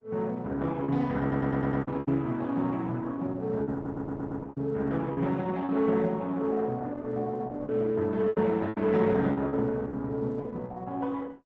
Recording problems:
lossy codec; Opus, log-spectral distance 2 dB
packet loss; 7% of the sound replaced, filled with repeated pitch periods
audio stuttering; at 1 s and at 3.5 s

